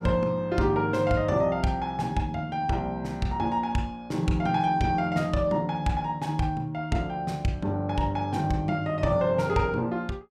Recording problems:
none

